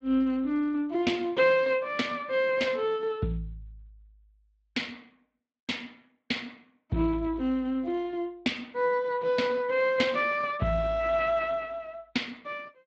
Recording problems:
codec artefacts; Speex, log-spectral distance 3 dB

